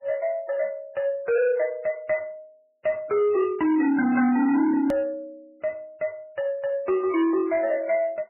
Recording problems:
codec artefacts; MP3, log-spectral distance 2 dB, nothing above 14.6 kHz
distortion; soft clipping, signal-to-distortion ratio 11 dB
edit click; at 5 s

